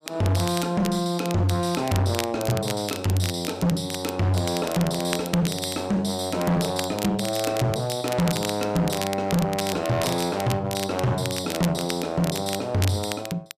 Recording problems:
distorted audio; hard clipping, uneven, signal-to-distortion ratio 7 dB
crackle; vinyl, SNR 10 dB

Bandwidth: 14.5 kHz